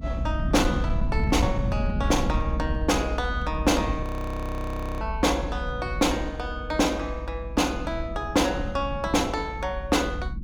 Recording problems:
distortion; hard clipping, uneven, signal-to-distortion ratio 11 dB
low-frequency rumble; below 130 Hz, SNR 4 dB
frozen audio; at 4 s for 1 s

